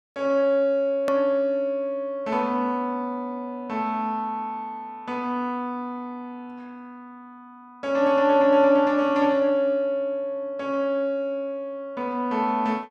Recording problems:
edit click; at 1 s

